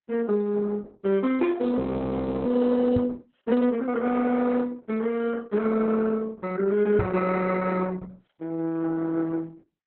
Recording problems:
lossy codec; Opus, log-spectral distance 3 dB, nothing above 4.1 kHz
audio freezing; at 2 s for 0.5 s
microphone thump; at 3 s and at 7 s; peak +2 dB vs average level

